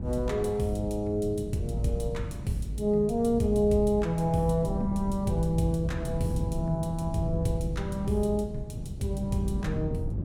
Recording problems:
wind noise; below 170 Hz, SNR 7 dB

